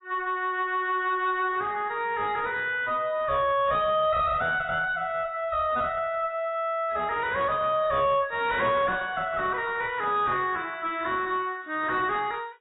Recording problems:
lossy codec; AAC, log-spectral distance 2 dB, nothing above 3.5 kHz
distortion; soft clipping, signal-to-distortion ratio 9 dB

